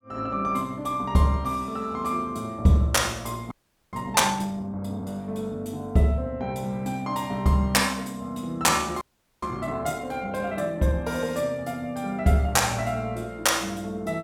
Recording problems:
audio freezing; at 3.5 s and at 9 s

